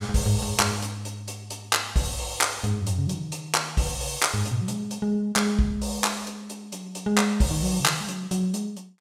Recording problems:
none

